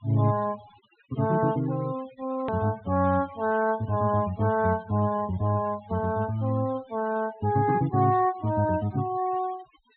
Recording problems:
treble missing; nothing above 4 kHz
noise reduction artefacts; signal-to-artefact ratio 21 dB
edit click; at 2.5 s

